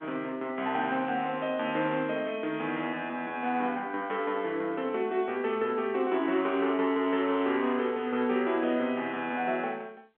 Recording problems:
phone line; 220 Hz to 3.5 kHz, G.711

